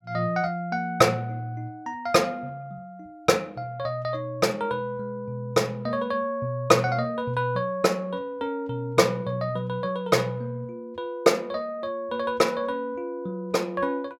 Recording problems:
none

